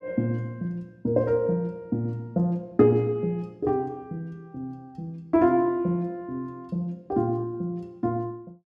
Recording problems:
none

